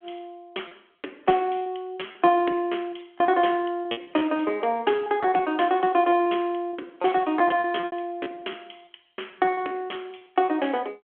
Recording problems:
phone line; 260 Hz to 3.4 kHz, G.726
packet loss; 14% of the sound replaced, filled with repeated pitch periods

